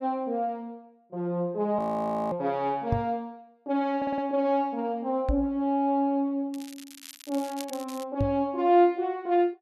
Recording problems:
frozen audio; at 2 s for 0.5 s
microphone bump; at 3 s, at 5.5 s and at 8 s; peak +3 dB vs average level
audio stuttering; at 4 s
crackling; from 6.5 to 8 s; loose cable, SNR 17 dB

